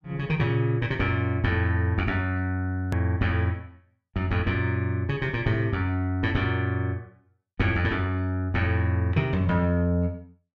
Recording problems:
hard cut with a click; at 3 s

